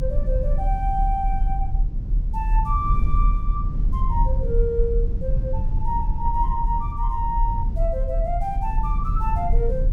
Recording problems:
rumble; below 50 Hz, strongest tone 38 Hz, SNR -3 dB

